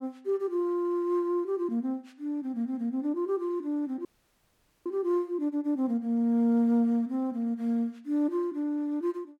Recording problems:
dropout; at 4 s for 1 s

